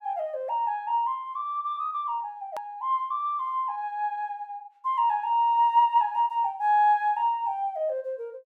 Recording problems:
hard cut with a click; at 2.5 s

